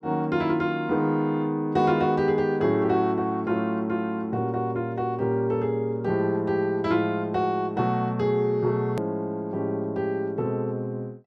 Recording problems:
hard cut with a click; at 9 s

